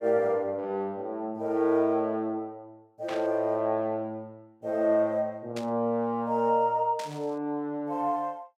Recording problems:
burst of static; at 3 s, at 5.5 s and at 7 s; peak -8 dB vs average level

